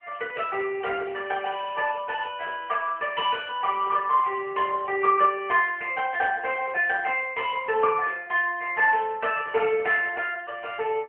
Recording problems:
telephone audio; 340 Hz to 3.2 kHz, AMR-NB

